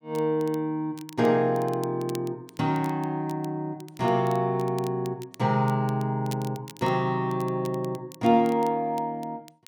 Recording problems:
crackling; vinyl, SNR 23 dB

